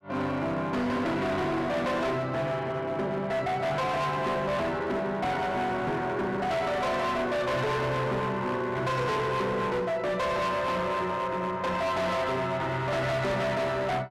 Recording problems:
distortion; hard clipping, signal-to-distortion ratio 7 dB

